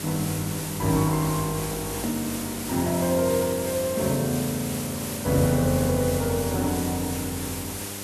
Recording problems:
electrical hum; 50 Hz, harmonics up to 1.1 kHz, SNR 13 dB
hiss; slope -2 dB per octave, SNR 7 dB
click at an edit; at 2 s

